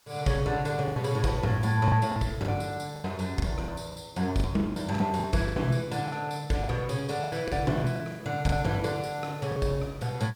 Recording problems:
hiss; slope 0 dB per octave, SNR 28 dB
lost packets; 11% of the sound replaced, filled with the last packet

